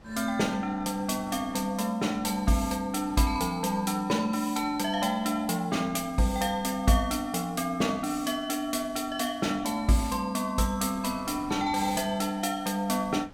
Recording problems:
wind on the microphone; below 660 Hz, SNR 22 dB

